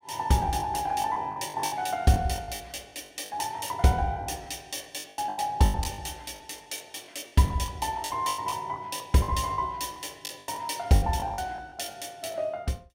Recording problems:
packet loss; 14% of the sound replaced, filled with the last packet

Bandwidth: 16 kHz